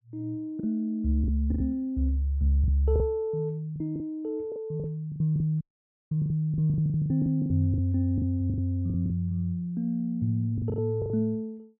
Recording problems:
packet loss; 13% of the sound replaced, filled with the last packet
dropout; at 5.5 s for 0.5 s

